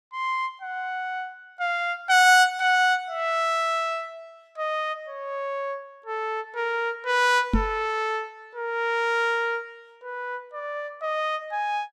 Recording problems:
microphone bump; at 7.5 s; peak +6 dB vs average level

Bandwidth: 14.5 kHz